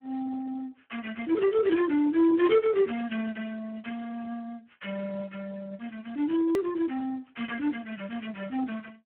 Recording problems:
phone line; 240 Hz to 3.3 kHz, Speex
hard cut with a click; at 6.5 s

